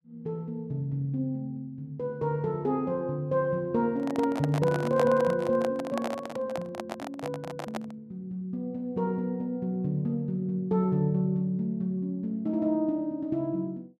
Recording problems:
handling noise; from 4 to 8 s; peak +2 dB vs average level

